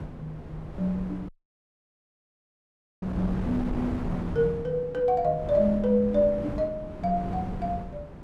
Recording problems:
wind on the microphone; below 350 Hz, SNR 9 dB
audio cutting out; at 1.5 s for 1.5 s

